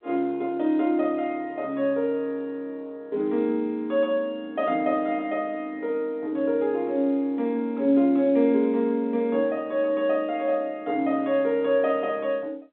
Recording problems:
telephone audio; 170 Hz to 3.8 kHz, G.711

